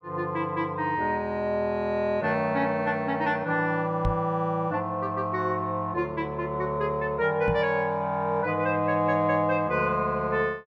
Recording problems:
knock on the microphone; at 4 s and at 7.5 s; peak +1 dB vs average level

